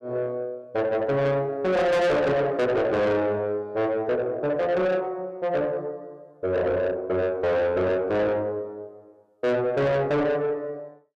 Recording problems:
distorted audio; soft clipping, signal-to-distortion ratio 7 dB

